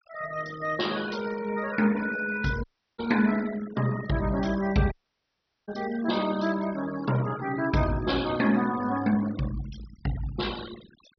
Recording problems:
treble missing; nothing above 5.9 kHz
noise reduction artefacts; signal-to-artefact ratio 15 dB
dropout; at 2.5 s and at 5 s for 1 s

